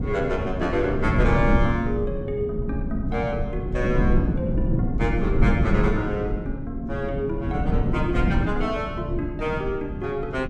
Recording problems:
wind noise; below 200 Hz, SNR -1 dB

